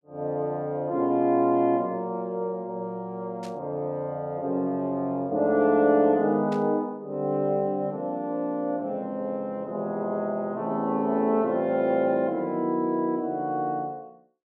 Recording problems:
static burst; at 3.5 s and at 6.5 s; peak -14 dB vs average level

